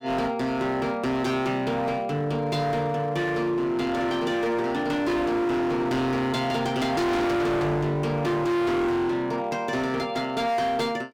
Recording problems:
distortion; hard clipping, signal-to-distortion ratio 6 dB

